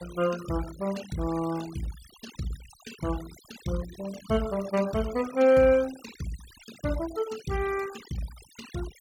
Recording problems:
noise reduction artefacts; signal-to-artefact ratio 16 dB

